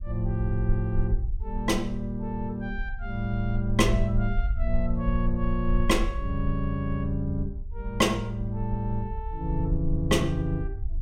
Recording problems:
rumble; below 54 Hz, SNR 5 dB

